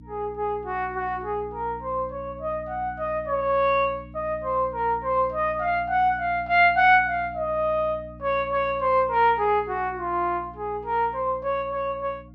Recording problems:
hum; 60 Hz, harmonics up to 300 Hz, SNR 20 dB

